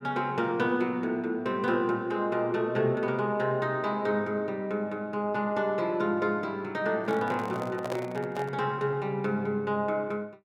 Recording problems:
handling noise; from 7 to 8.5 s; peak -2 dB vs average level

